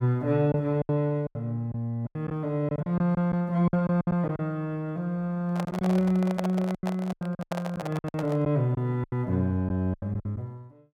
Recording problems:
packet loss; 12% of the sound replaced, filled with silence
handling noise; from 5.5 to 8.5 s; peak 0 dB vs average level

